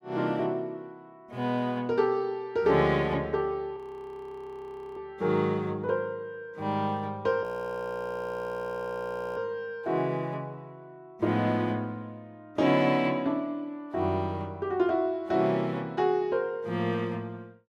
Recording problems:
audio freezing; at 4 s for 1 s and at 7.5 s for 2 s

